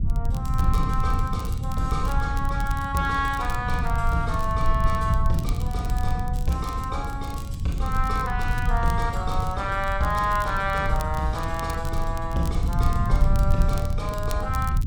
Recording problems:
low-frequency rumble; below 92 Hz, SNR 0 dB
crackling; vinyl, SNR 18 dB

